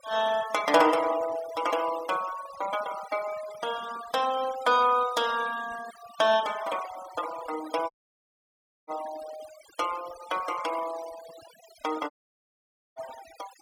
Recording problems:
noise reduction artefacts; signal-to-artefact ratio 15 dB
audio cutting out; at 8 s for 1 s and at 12 s for 1 s

